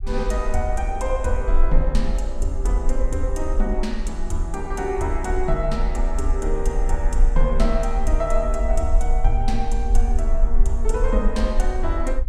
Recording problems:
rumble; below 42 Hz, strongest tone 24 Hz, SNR -2 dB

